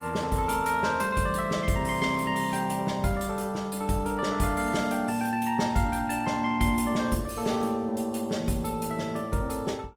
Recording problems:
codec artefacts; Opus, log-spectral distance 4 dB

